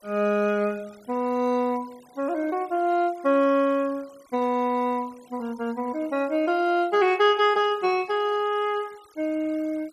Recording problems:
noise reduction artefacts; signal-to-artefact ratio 26 dB

